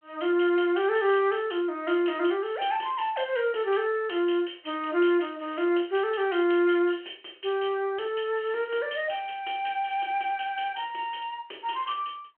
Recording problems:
phone line; 300 Hz to 3.2 kHz, G.726

